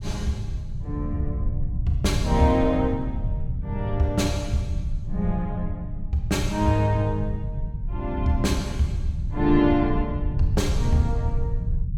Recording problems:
rumble; below 110 Hz, SNR 5 dB

